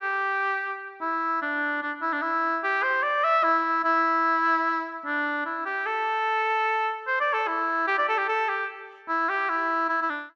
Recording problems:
none

